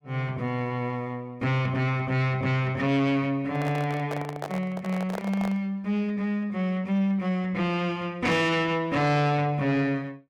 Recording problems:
distortion; soft clipping, signal-to-distortion ratio 11 dB
handling noise; from 3.5 to 5.5 s; peak -3 dB vs average level

